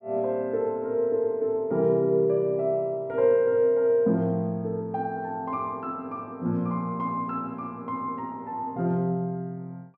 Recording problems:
none

